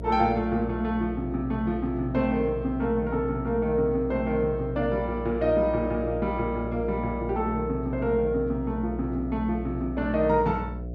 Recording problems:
electrical hum; 60 Hz, harmonics up to 720 Hz, SNR 9 dB

